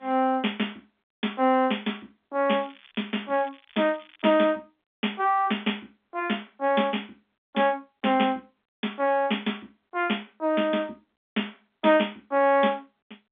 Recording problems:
phone line; 190 Hz to 3.6 kHz, G.711
crackling; from 2.5 to 4.5 s; loose cable, SNR 26 dB

